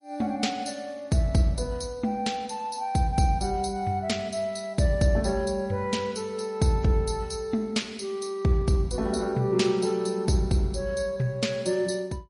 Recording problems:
lossy compression; MP3, log-spectral distance 3 dB, nothing above 10.4 kHz

